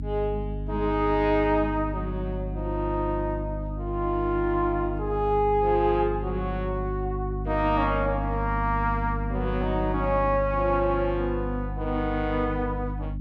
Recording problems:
electrical hum; 50 Hz, harmonics up to 300 Hz, SNR 5 dB

